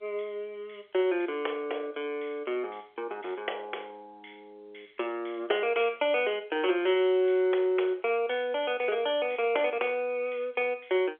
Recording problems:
phone line; 320 Hz to 3.5 kHz, G.711

